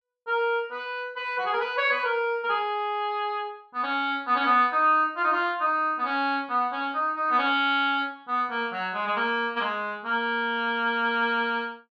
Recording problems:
none

